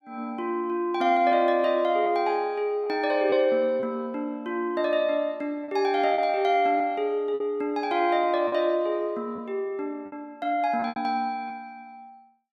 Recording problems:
lost packets; 4% of the sound replaced, filled with repeated pitch periods

